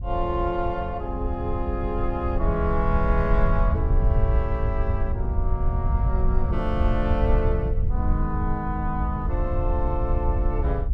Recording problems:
wind on the microphone; below 78 Hz, SNR -2 dB

